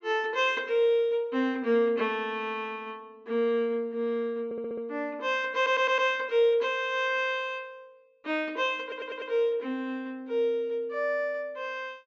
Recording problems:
treble missing; nothing above 7.6 kHz
audio stuttering; at 4.5 s, at 5.5 s and at 9 s

